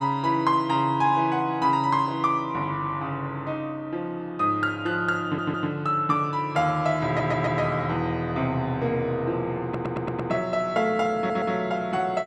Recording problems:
audio stuttering; 4 times, first at 5 s

